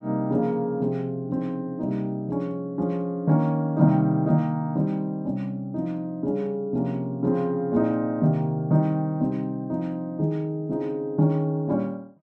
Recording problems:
none

